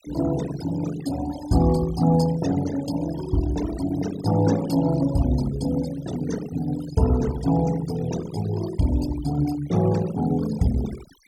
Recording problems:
noise reduction artefacts; signal-to-artefact ratio 14 dB

